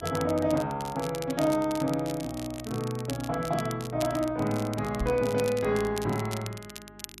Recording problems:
hum; 50 Hz, harmonics up to 400 Hz, SNR 22 dB
crackling; vinyl, SNR 14 dB
microphone bump; at 5 s; peak +1 dB vs average level

